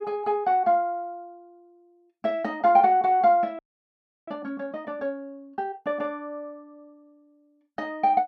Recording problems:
frozen audio; at 3.5 s for 0.5 s

